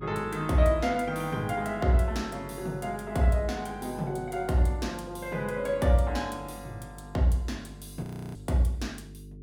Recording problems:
electrical hum; 50 Hz, harmonics up to 450 Hz, SNR 17 dB
audio freezing; at 8 s

